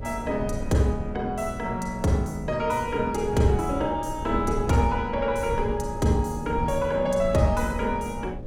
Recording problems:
electrical hum; 60 Hz, harmonics up to 600 Hz, SNR 16 dB
wind on the microphone; below 120 Hz, SNR 10 dB

